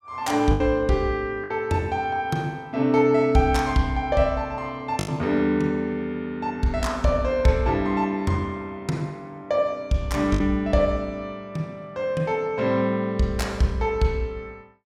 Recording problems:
packet loss; 1.9% of the sound replaced, filled with the last packet

